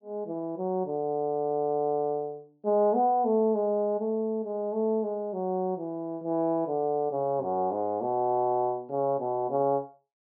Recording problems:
low-pass filter; nothing above 5.5 kHz

